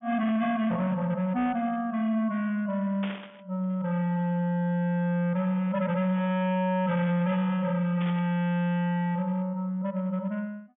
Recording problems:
treble missing; nothing above 3.5 kHz
distorted audio; hard clipping, signal-to-distortion ratio 8 dB
burst of static; at 3 s and at 8 s; peak -7 dB vs average level

